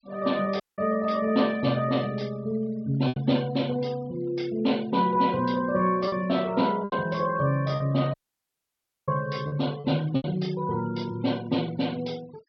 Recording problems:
low-pass filter; nothing above 5.5 kHz
noise reduction artefacts; signal-to-artefact ratio 22 dB
lost packets; 3% of the sound replaced, filled with repeated pitch periods
audio cutting out; at 0.5 s and at 8 s for 1 s

